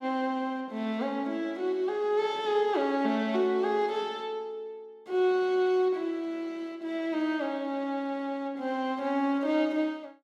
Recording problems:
none

